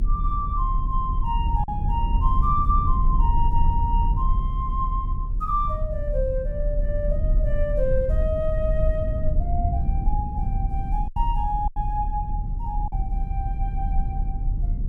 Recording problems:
low-frequency rumble; below 66 Hz, strongest tone 36 Hz, SNR -3 dB
lost packets; 1.7% of the sound replaced, filled with silence

